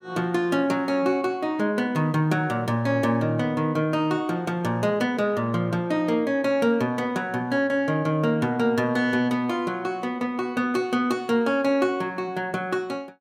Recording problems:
none

